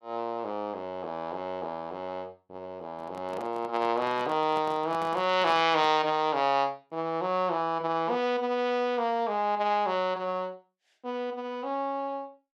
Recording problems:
microphone handling noise; from 3 to 6 s; peak -8 dB vs average level

